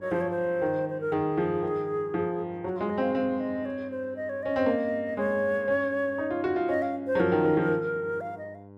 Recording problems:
mains hum; 50 Hz, harmonics up to 1.1 kHz, SNR 22 dB

